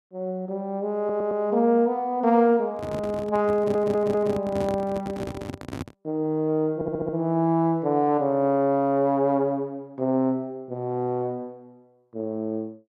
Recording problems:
audio stuttering; at 1 s, at 3.5 s and at 7 s
handling noise; from 2.5 to 6 s; peak -4 dB vs average level

